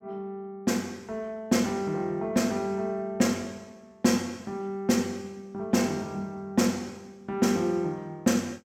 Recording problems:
none

